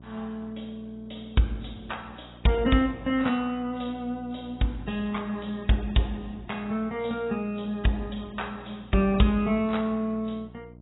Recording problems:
lossy codec; AAC, log-spectral distance 5 dB, nothing above 3.8 kHz
electrical hum; 60 Hz, harmonics up to 720 Hz, SNR 20 dB

